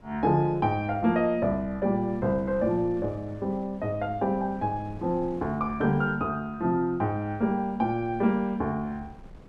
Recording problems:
wind noise; below 340 Hz, SNR 21 dB

